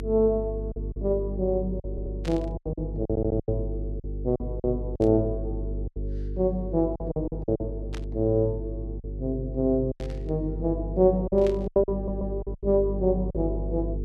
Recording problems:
hum; 50 Hz, harmonics up to 450 Hz, SNR 7 dB
lost packets; 9% of the sound replaced, filled with silence
audio stuttering; at 2 s, at 3 s and at 12 s
static burst; 5 times, first at 2 s; peak -10 dB vs average level

